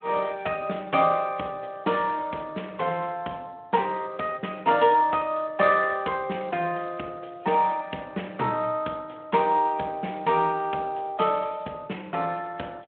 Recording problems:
telephone audio; 220 Hz to 3.4 kHz, Speex

